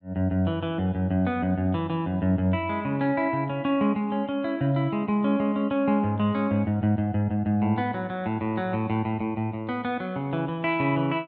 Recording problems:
none

